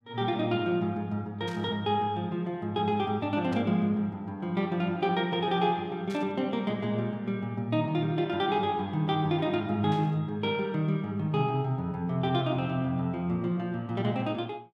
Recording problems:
static burst; 4 times, first at 1.5 s; peak -12 dB vs average level

